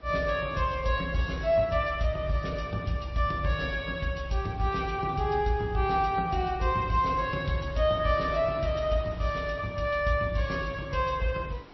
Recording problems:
lossy codec; MP3, log-spectral distance 2 dB, nothing above 5.7 kHz
wind on the microphone; below 1.5 kHz, SNR 22 dB

